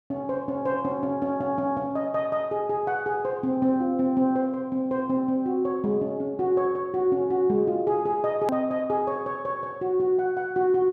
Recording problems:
hard cut with a click; at 8.5 s

